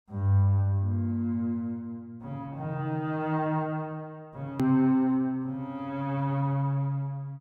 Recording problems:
click at an edit; at 4.5 s

